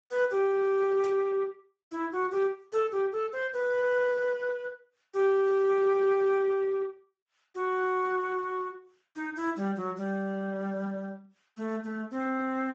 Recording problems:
lossy codec; Speex, log-spectral distance 2 dB
burst of static; at 1 s; peak -13 dB vs average level

